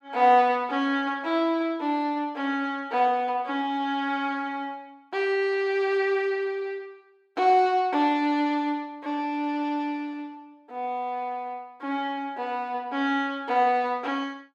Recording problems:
none

